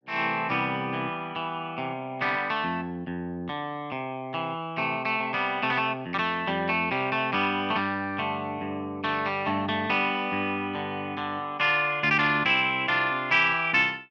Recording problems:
none

